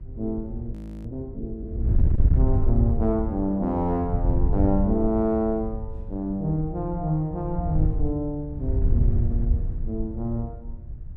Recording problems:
wind on the microphone; below 86 Hz, SNR 0 dB
audio freezing; at 0.5 s

